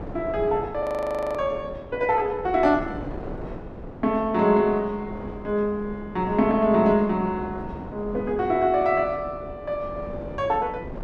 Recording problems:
wind on the microphone; below 510 Hz, SNR 14 dB
frozen audio; at 1 s for 0.5 s

